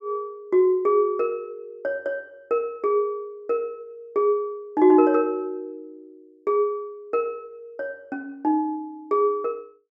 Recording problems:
none

